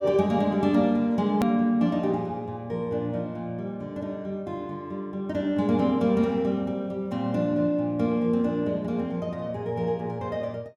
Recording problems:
hard cut with a click; at 1.5 s

